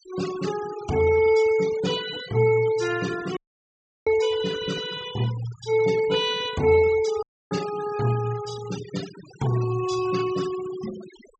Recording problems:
low-pass filter; nothing above 8 kHz
noise reduction artefacts; signal-to-artefact ratio 15 dB
audio cutting out; at 3.5 s for 0.5 s and at 7 s

